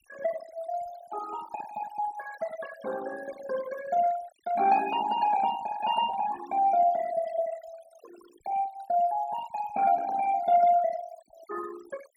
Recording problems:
denoising artefacts; signal-to-artefact ratio 16 dB

